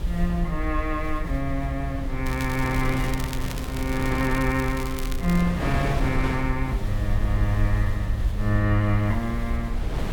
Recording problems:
hum; 60 Hz, harmonics up to 720 Hz, SNR 11 dB
background hiss; SNR 21 dB
low-frequency rumble; below 56 Hz, SNR 5 dB
wind on the microphone; below 560 Hz, SNR 8 dB
crackling; from 2.5 to 5.5 s; loose cable, SNR 12 dB

